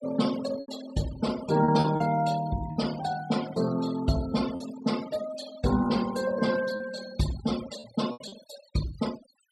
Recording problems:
noise reduction artefacts; signal-to-artefact ratio 13 dB
packet loss; 5% of the sound replaced, filled with repeated pitch periods

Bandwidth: 14.5 kHz